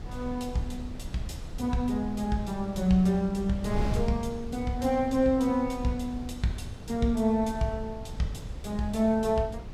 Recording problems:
wind noise; below 140 Hz, SNR 11 dB

